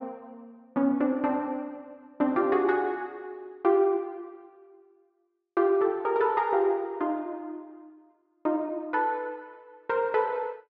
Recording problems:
treble cut off; nothing above 7.8 kHz

